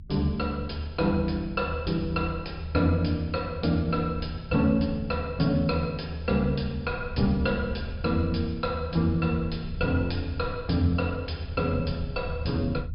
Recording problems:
treble missing; nothing above 5.5 kHz
low-frequency rumble; below 82 Hz, strongest tone 78 Hz, SNR 10 dB

